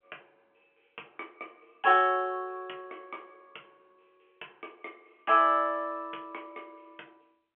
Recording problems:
phone line; 260 Hz to 3.3 kHz, G.711

